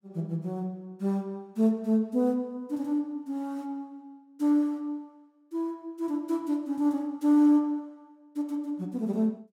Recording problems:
none

